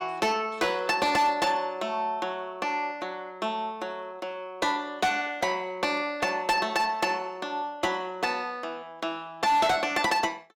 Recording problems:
distorted audio; hard clipping, signal-to-distortion ratio 11 dB

